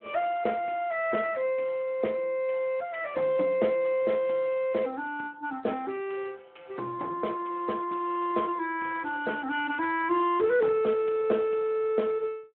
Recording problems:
telephone audio; 240 Hz to 3.1 kHz, Speex

